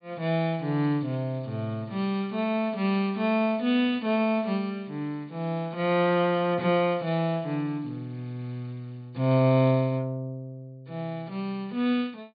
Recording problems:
low-pass filter; nothing above 4.8 kHz

